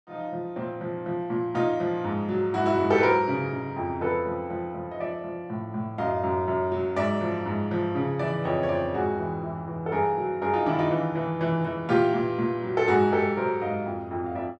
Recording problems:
none

